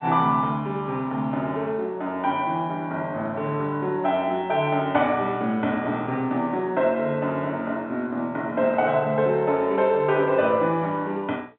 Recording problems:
telephone audio; 130 Hz to 3.8 kHz, G.711

